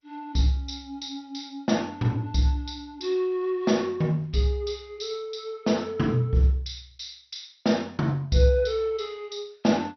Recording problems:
codec artefacts; G.722, then MP2, log-spectral distance 4 dB, nothing above 5.8 kHz

